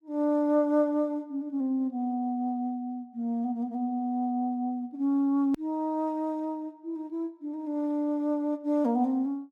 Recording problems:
hard cut with a click; at 5.5 s

